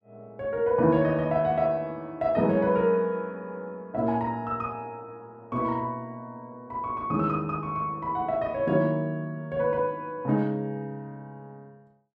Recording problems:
none

